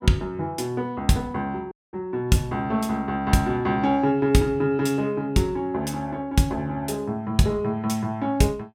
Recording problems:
dropout; at 1.5 s

